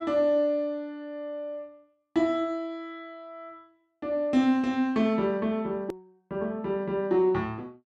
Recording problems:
edit click; at 6 s

